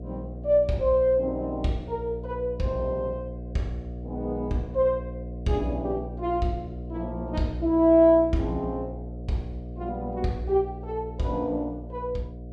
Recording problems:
hum; 60 Hz, harmonics up to 720 Hz, SNR 11 dB

